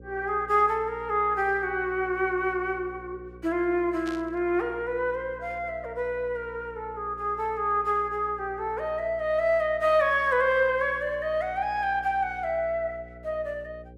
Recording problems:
hum; 60 Hz, harmonics up to 540 Hz, SNR 21 dB
static burst; at 4 s; peak -11 dB vs average level

